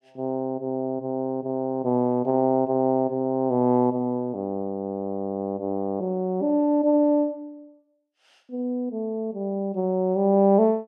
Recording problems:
none

